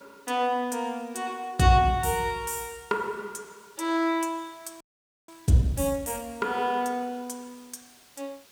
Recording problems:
background hiss; slope -1 dB per octave, SNR 28 dB
audio freezing; at 5 s

